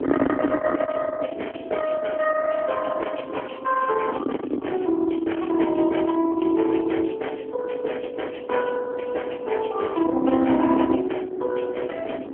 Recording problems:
telephone audio; 220 Hz to 3.3 kHz, AMR-NB
distortion; soft clipping, signal-to-distortion ratio 11 dB
wind on the microphone; below 640 Hz, SNR 8 dB

